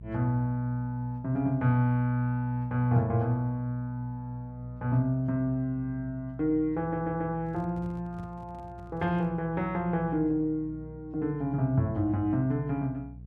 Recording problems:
hum; 60 Hz, harmonics up to 420 Hz, SNR 18 dB
stutter; at 7 s
microphone handling noise; from 7.5 to 9.5 s; peak -12 dB vs average level

